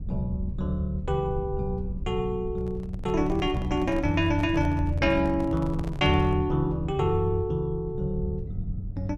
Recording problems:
low-frequency rumble; below 98 Hz, SNR 11 dB
microphone handling noise; from 2.5 to 6.5 s; peak -10 dB vs average level

